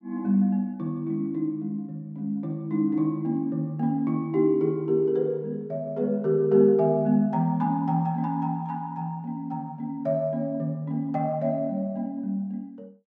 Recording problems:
none

